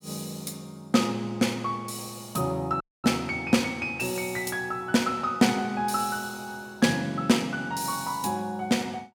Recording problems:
dropout; at 3 s

